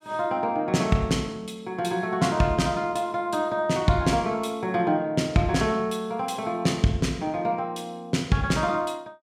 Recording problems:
none

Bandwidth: 16 kHz